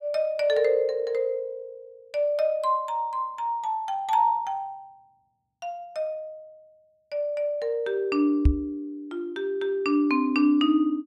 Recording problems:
knock on the microphone; at 8.5 s; peak +9 dB vs average level

